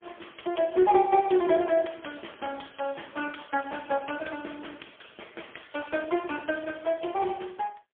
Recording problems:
phone line; 240 Hz to 3.3 kHz, AMR-NB, then MP3

